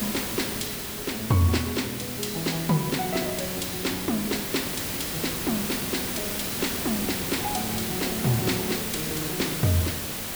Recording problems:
hiss; slope -2 dB per octave, SNR 1 dB

